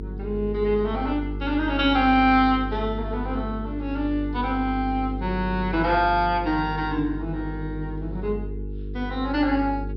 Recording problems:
low-pass filter; nothing above 5.5 kHz
electrical hum; 50 Hz, harmonics up to 450 Hz, SNR 8 dB

